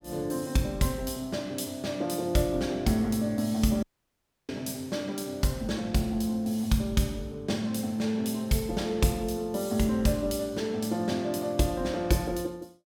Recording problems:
dropout; at 4 s for 0.5 s

